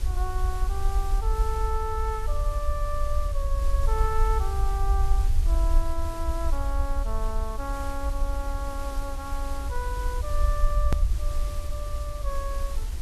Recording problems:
background hiss; SNR 10 dB
low-frequency rumble; below 56 Hz, SNR -5 dB
click at an edit; at 11 s

